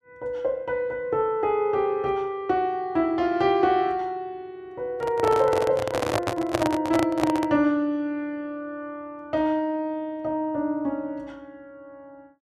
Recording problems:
handling noise; from 5 to 7.5 s; peak +5 dB vs average level

